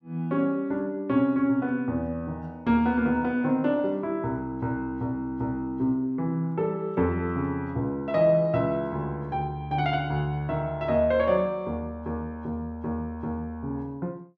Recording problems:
none

